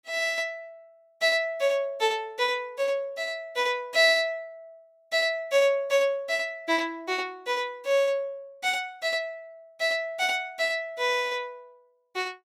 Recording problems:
none

